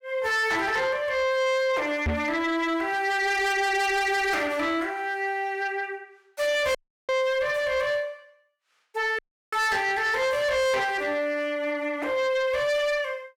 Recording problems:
distorted audio; soft clipping, signal-to-distortion ratio 8 dB
microphone thump; at 2 s; peak +1 dB vs average level
dropout; at 7 s and at 9 s

